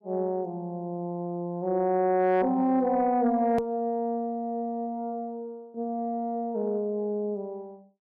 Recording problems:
distortion; soft clipping, signal-to-distortion ratio 12 dB
hard cut with a click; at 3.5 s

